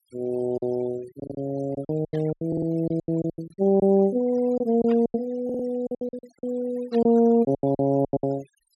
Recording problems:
denoising artefacts; signal-to-artefact ratio 23 dB
lost packets; 15% of the sound replaced, filled with silence
audio stuttering; at 1 s, at 2.5 s and at 5.5 s
burst of static; at 2 s, at 5 s and at 7 s; peak -15 dB vs average level

